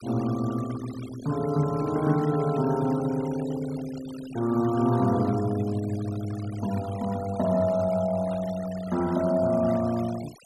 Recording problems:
noise reduction artefacts; signal-to-artefact ratio 18 dB

